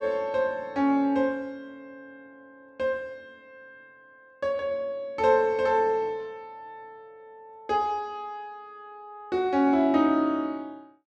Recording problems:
none

